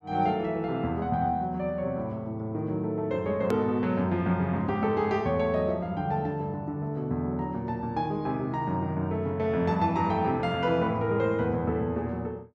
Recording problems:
hard cut with a click; at 3.5 s

